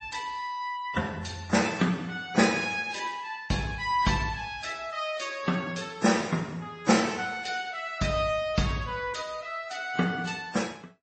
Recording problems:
codec artefacts; AAC, then MP3, log-spectral distance 4 dB, nothing above 8.2 kHz

